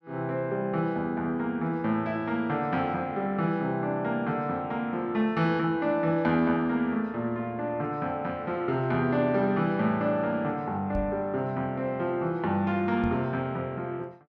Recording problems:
microphone thump; at 11 s and at 13 s; peak -3 dB vs average level

